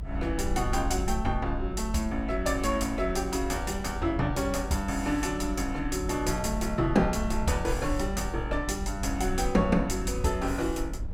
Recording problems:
rumble; below 60 Hz, strongest tone 48 Hz, SNR 7 dB
wind noise; below 430 Hz, SNR 20 dB

